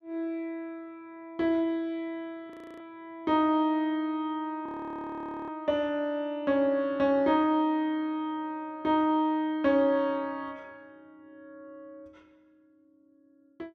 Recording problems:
audio freezing; at 2.5 s and at 4.5 s for 1 s

